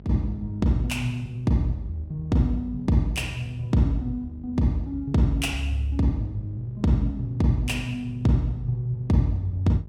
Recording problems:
mains hum; 50 Hz, harmonics up to 650 Hz, SNR 19 dB

